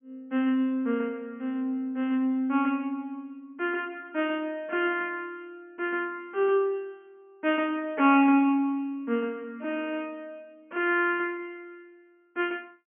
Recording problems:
low-pass filter; nothing above 3.2 kHz

